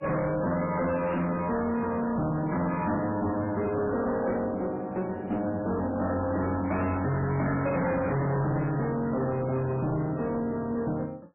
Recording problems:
lossy codec; MP3, log-spectral distance 3 dB, nothing above 2.6 kHz
distorted audio; hard clipping, uneven, signal-to-distortion ratio 7 dB

